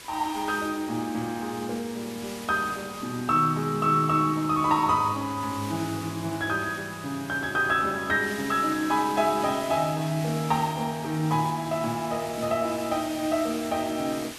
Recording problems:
background hiss; slope 0 dB per octave, SNR 14 dB

